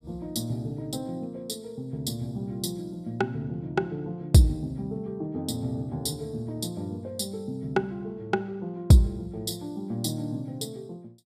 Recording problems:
none

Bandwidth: 14.5 kHz